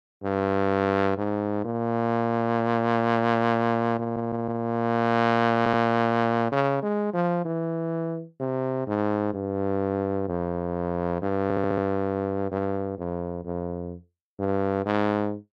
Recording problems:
audio stuttering; at 4 s, at 5.5 s and at 11 s

